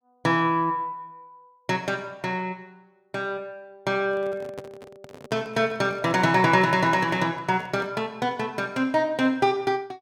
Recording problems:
microphone handling noise; from 4 to 8 s; peak -10 dB vs average level

